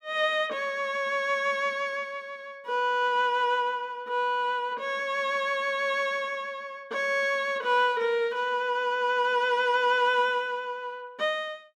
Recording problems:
none

